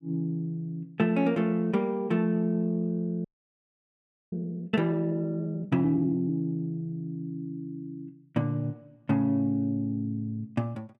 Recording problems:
frozen audio; at 3.5 s for 1 s

